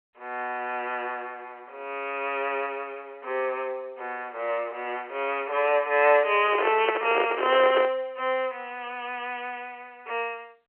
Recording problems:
telephone audio; 320 Hz to 3.2 kHz, G.711
microphone handling noise; from 6.5 to 8 s; peak +3 dB vs average level

